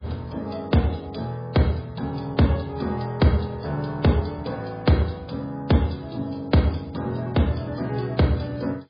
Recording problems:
lossy compression; MP3, log-spectral distance 4 dB, nothing above 4.6 kHz

